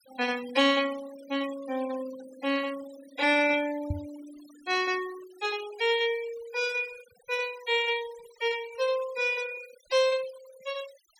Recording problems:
noise reduction artefacts; signal-to-artefact ratio 18 dB
microphone thump; at 4 s; peak +1 dB vs average level

